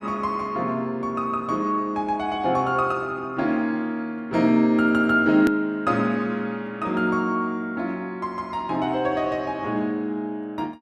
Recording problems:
hard cut with a click; at 5.5 s

